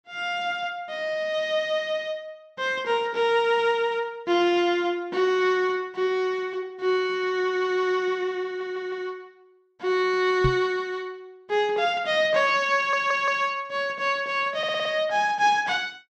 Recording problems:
audio stuttering; at 8.5 s, at 13 s and at 15 s
microphone bump; at 10 s; peak +3 dB vs average level

